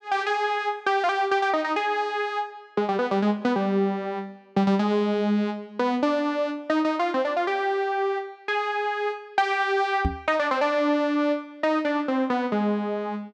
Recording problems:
microphone thump; at 10 s; peak +3 dB vs average level

